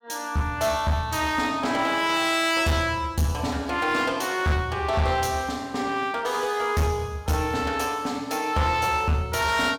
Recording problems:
distorted audio; hard clipping, uneven, signal-to-distortion ratio 10 dB

